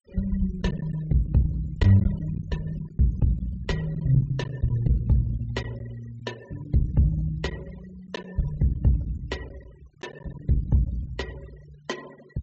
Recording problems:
low-pass filter; nothing above 7.8 kHz
noise reduction artefacts; signal-to-artefact ratio 22 dB
lost packets; 5% of the sound replaced, filled with silence

